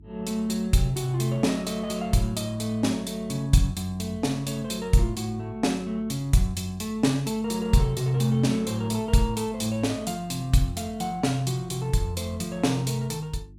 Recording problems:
electrical hum; 50 Hz, harmonics up to 350 Hz, SNR 22 dB

